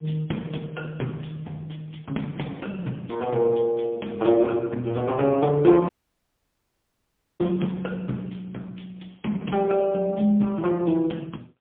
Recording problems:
telephone audio; 130 Hz to 3.4 kHz, AMR-NB, then MP3
dropout; at 6 s for 1.5 s

